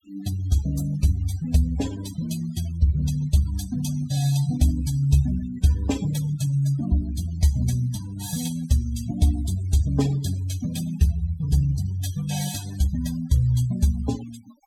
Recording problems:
denoising artefacts; signal-to-artefact ratio 18 dB

